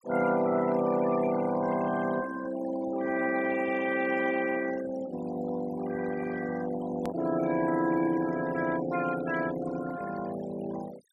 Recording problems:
noise reduction artefacts; signal-to-artefact ratio 14 dB
click at an edit; at 7 s

